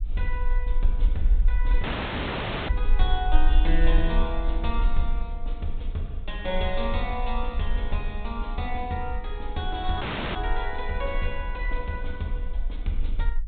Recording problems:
treble cut off; nothing above 4 kHz
rumble; below 42 Hz, strongest tone 18 Hz, SNR -2 dB
dropout; at 2 s for 1 s and at 10 s

